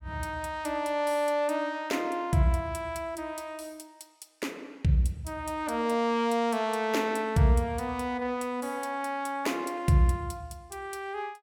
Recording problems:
none

